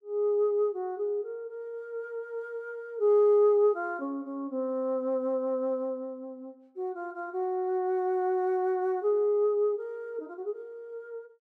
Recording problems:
none

